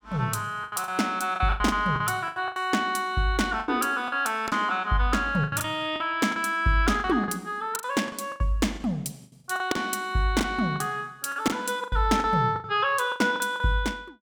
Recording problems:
lost packets; 13% of the sound replaced, filled with the last packet

